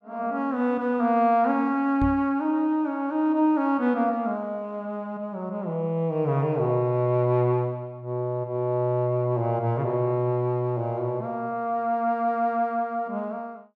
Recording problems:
microphone bump; at 2 s; peak 0 dB vs average level

